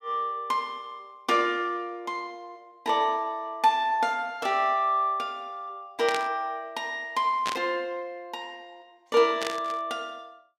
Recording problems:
burst of static; at 6 s, at 7.5 s and at 9.5 s; peak +1 dB vs average level

